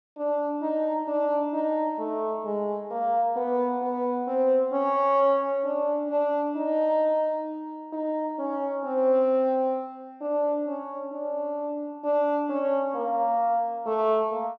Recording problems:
none

